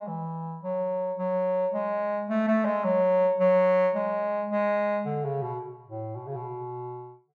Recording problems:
none

